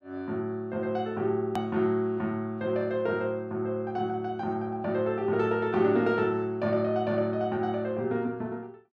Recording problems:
edit click; at 1.5 s

